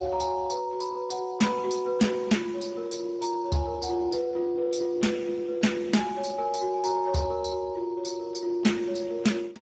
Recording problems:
lossy compression; Speex, log-spectral distance 4 dB, nothing above 7.3 kHz
distorted audio; soft clipping, signal-to-distortion ratio 12 dB

